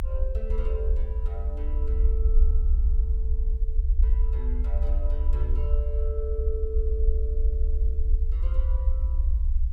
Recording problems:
background hiss; slope -5 dB per octave, SNR 30 dB
low-frequency rumble; below 64 Hz, strongest tone 28 Hz, SNR -13 dB

